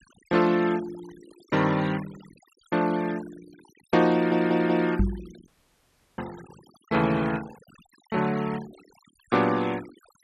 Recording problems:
denoising artefacts; signal-to-artefact ratio 20 dB
stutter; at 4 s
microphone thump; at 5 s; peak +5 dB vs average level
audio cutting out; at 5.5 s for 0.5 s

